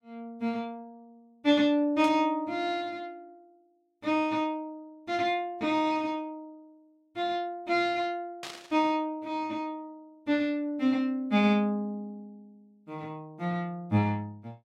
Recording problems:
static burst; at 2 s and at 8.5 s; peak -6 dB vs average level

